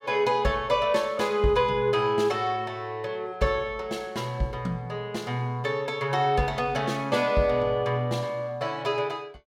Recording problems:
none

